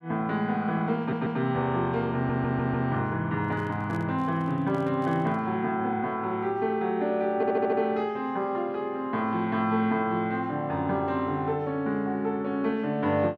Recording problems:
audio stuttering; at 1 s, at 2 s and at 7.5 s
handling noise; from 3.5 to 5.5 s; peak -11 dB vs average level

